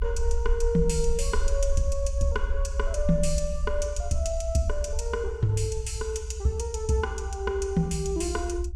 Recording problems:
rumble; below 62 Hz, SNR 3 dB

